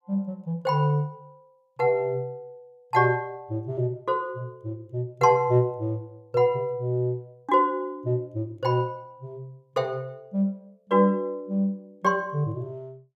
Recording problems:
none

